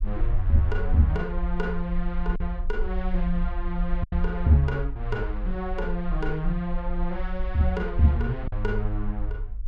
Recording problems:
rumble; below 46 Hz, SNR 5 dB
lost packets; 1.7% of the sound replaced, filled with silence

